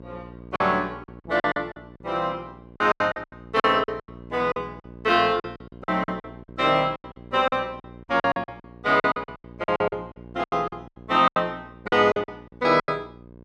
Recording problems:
electrical hum; 60 Hz, harmonics up to 1.1 kHz, SNR 21 dB
packet loss; 19% of the sound replaced, filled with silence

